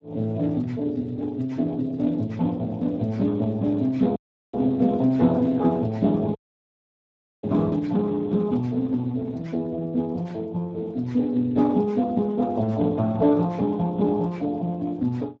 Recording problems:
lossy compression; Speex, log-spectral distance 2 dB
dropout; at 4 s and at 6.5 s for 1 s

